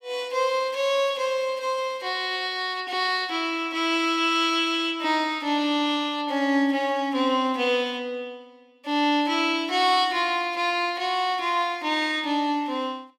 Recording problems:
none

